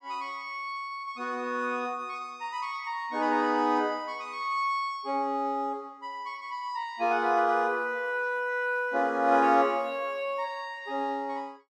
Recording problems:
none

